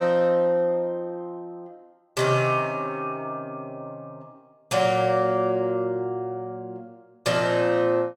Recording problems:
none

